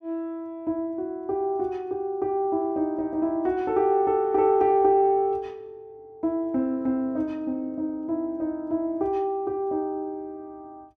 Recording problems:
none

